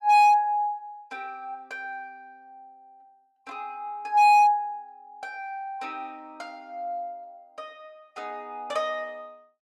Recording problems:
distorted audio; hard clipping, signal-to-distortion ratio 10 dB

